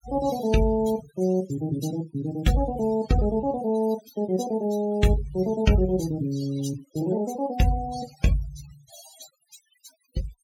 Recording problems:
denoising artefacts; signal-to-artefact ratio 13 dB

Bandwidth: 17 kHz